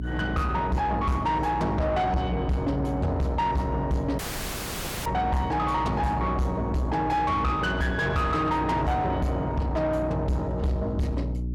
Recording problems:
distortion; soft clipping, signal-to-distortion ratio 7 dB
hum; 60 Hz, harmonics up to 360 Hz, SNR 6 dB
audio cutting out; at 4 s for 1 s

